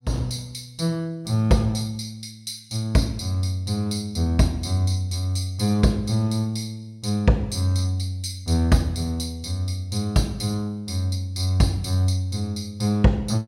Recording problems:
none

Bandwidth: 16.5 kHz